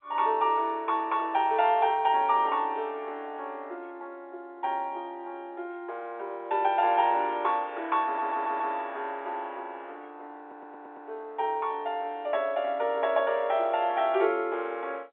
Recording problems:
telephone audio; 320 Hz to 3.6 kHz, G.711
audio stuttering; at 8 s and at 10 s

